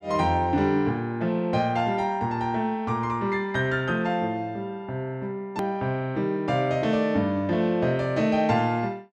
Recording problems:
edit click; at 5.5 s

